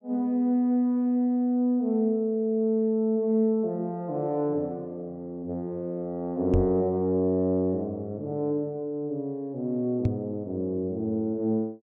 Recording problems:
microphone thump; at 6.5 s and at 10 s; peak +5 dB vs average level

